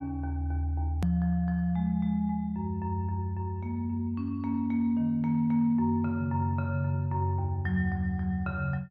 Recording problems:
hard cut with a click; at 1 s

